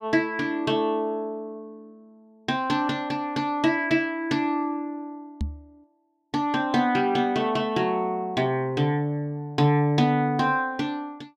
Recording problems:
microphone thump; at 5.5 s; peak 0 dB vs average level

